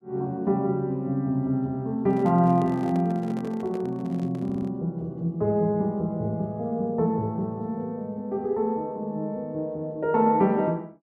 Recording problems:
handling noise; from 2 to 4.5 s; peak -8 dB vs average level
stutter; at 4.5 s

